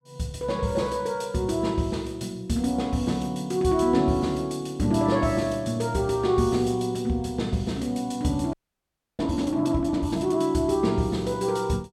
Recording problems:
frozen audio; at 8.5 s for 0.5 s

